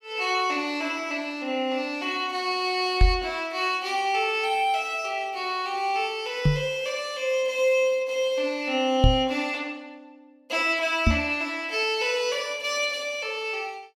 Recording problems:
knock on the microphone; 4 times, first at 3 s; peak +9 dB vs average level

